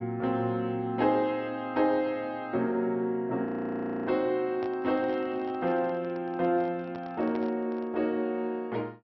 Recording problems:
treble cut off; nothing above 5.6 kHz
audio freezing; at 3.5 s for 0.5 s
handling noise; from 4.5 to 8 s; peak -9 dB vs average level

